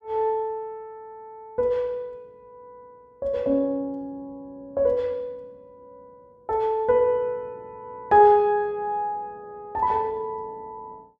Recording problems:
none

